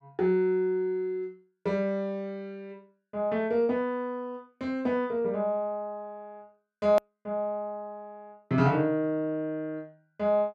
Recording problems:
click at an edit; at 7 s

